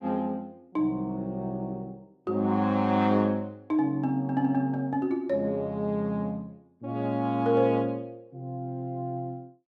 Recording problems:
none

